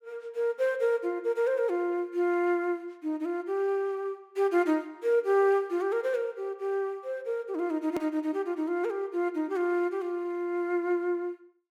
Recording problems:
click at an edit; at 8 s

